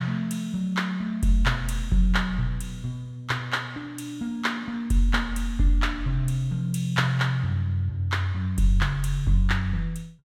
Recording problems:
none

